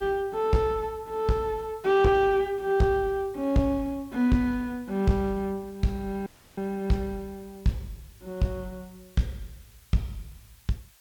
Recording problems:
distortion; soft clipping, signal-to-distortion ratio 11 dB
background hiss; SNR 28 dB
dropout; at 6.5 s

